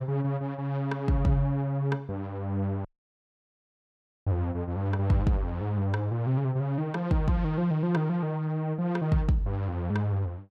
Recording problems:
audio cutting out; at 3 s for 1.5 s

